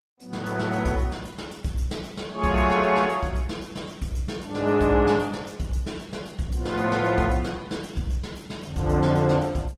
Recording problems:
lossy codec; Opus, log-spectral distance 4 dB, nothing above 17.7 kHz

